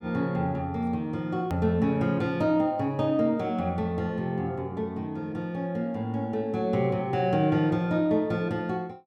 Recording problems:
edit click; at 1.5 s

